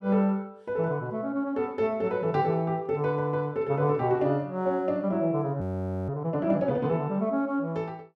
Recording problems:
audio freezing; at 5.5 s

